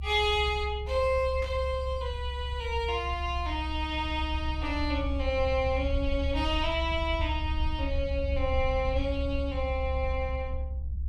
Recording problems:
rumble; below 70 Hz, strongest tone 68 Hz, SNR 3 dB
static burst; at 1.5 s; peak -11 dB vs average level

